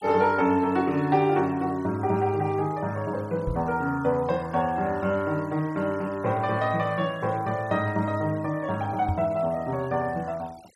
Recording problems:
denoising artefacts; signal-to-artefact ratio 25 dB
microphone thump; at 3.5 s and at 9 s; peak +1 dB vs average level

